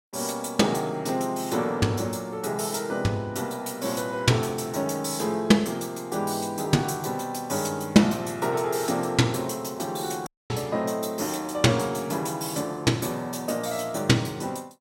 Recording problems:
dropout; at 10 s

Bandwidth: 16.5 kHz